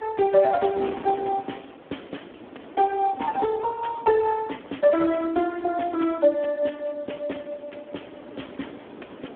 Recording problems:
telephone audio; 220 Hz to 3.5 kHz, Speex
wind noise; below 760 Hz, SNR 18 dB

